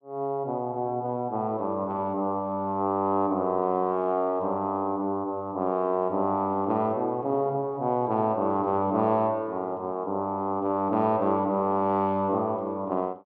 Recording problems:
none

